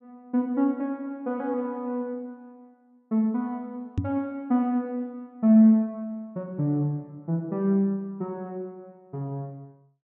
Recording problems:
microphone thump; at 4 s; peak +3 dB vs average level

